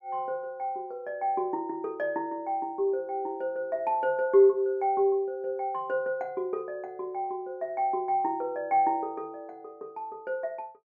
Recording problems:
none

